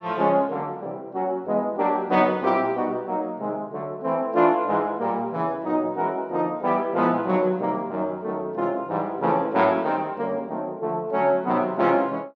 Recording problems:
none

